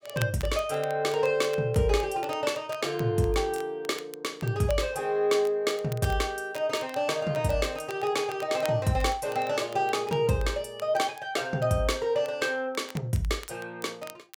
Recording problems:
crackling; vinyl, SNR 20 dB

